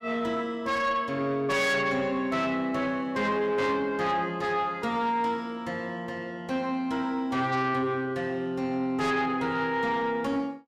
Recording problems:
distorted audio; soft clipping, signal-to-distortion ratio 10 dB

